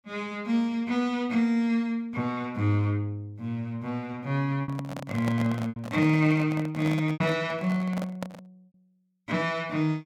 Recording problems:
lost packets; 2% of the sound replaced, filled with repeated pitch periods
handling noise; from 4.5 to 8.5 s; peak -2 dB vs average level

